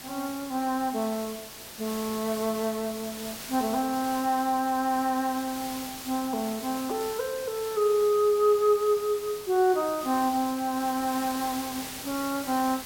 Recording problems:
hiss; slope -1 dB per octave, SNR 11 dB

